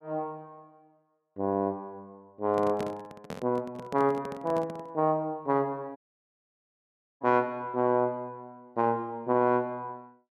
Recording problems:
handling noise; from 2.5 to 5 s; peak -2 dB vs average level
dropout; at 6 s for 1 s

